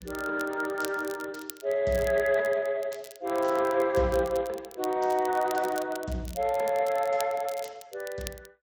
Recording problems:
codec artefacts; Speex, log-spectral distance 3 dB
crackle; vinyl, SNR 17 dB

